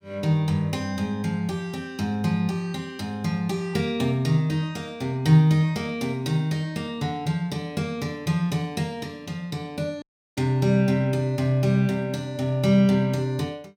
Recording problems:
dropout; at 10 s

